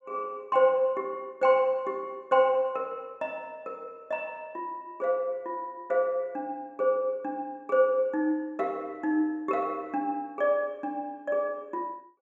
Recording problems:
none

